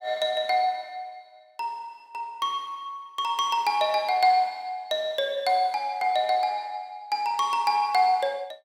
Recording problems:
none

